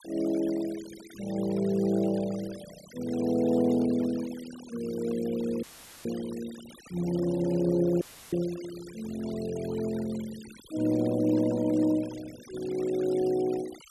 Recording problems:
denoising artefacts; signal-to-artefact ratio 19 dB
audio cutting out; at 5.5 s and at 8 s; filled with static

